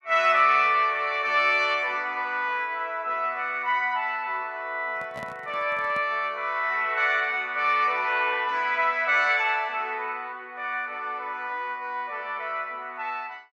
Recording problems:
microphone handling noise; from 5 to 6 s; peak -12 dB vs average level

